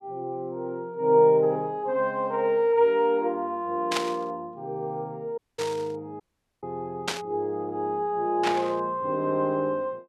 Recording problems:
burst of static; 4 times, first at 4 s; peak +3 dB vs average level
dropout; at 5.5 s and at 6 s

